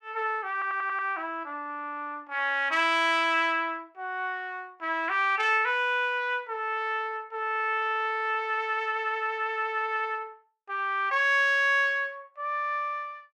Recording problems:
audio stuttering; at 0.5 s

